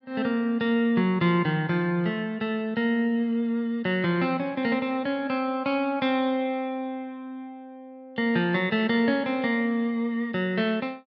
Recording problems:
none

